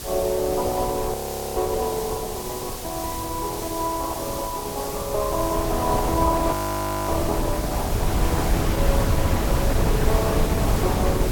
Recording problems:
lossy codec; Opus, log-spectral distance 3 dB, nothing above 17.1 kHz
hiss; slope +2 dB per octave, SNR 7 dB
wind noise; below 240 Hz, SNR 0 dB
audio freezing; at 1 s and at 6.5 s for 0.5 s

